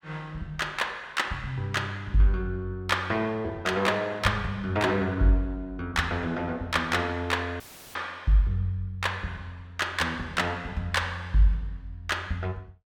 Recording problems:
dropout; at 7.5 s; filled with static

